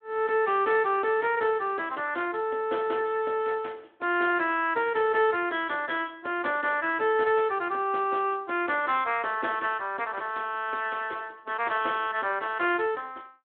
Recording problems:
telephone audio; 280 Hz to 3.5 kHz, Speex

